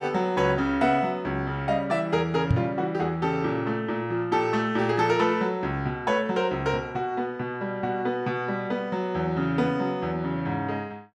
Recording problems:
microphone thump; at 2.5 s; peak +7 dB vs average level

